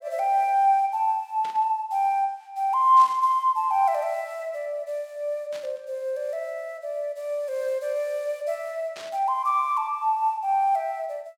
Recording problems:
static burst; 4 times, first at 1.5 s; peak -12 dB vs average level

